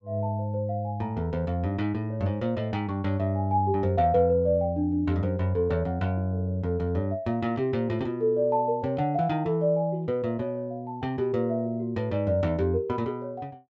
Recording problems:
none

